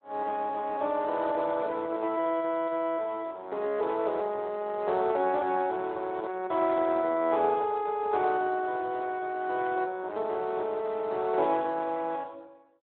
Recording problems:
phone line; 320 Hz to 3.7 kHz, Speex

